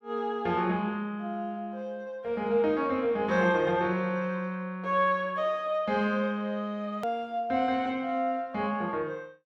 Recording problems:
click at an edit; at 7 s

